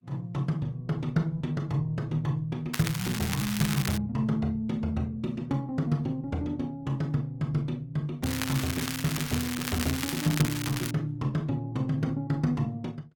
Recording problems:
lossy codec; Opus, log-spectral distance 3 dB, nothing above 18.3 kHz
crackle; from 2.5 to 4 s and from 8 to 11 s; loose cable, SNR 4 dB

